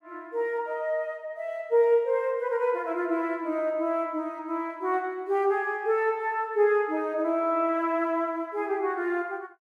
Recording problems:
none

